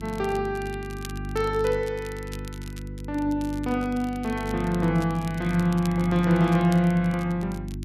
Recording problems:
electrical hum; 50 Hz, harmonics up to 350 Hz, SNR 11 dB
crackling; vinyl, SNR 21 dB

